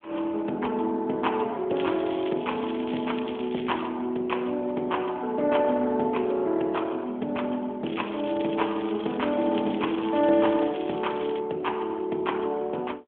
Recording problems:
phone line; 220 Hz to 3.4 kHz, AMR-NB
crackle; from 2 to 4 s and from 8 to 11 s; loose cable, SNR 15 dB

